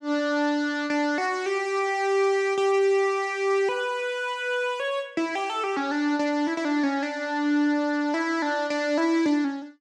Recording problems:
none

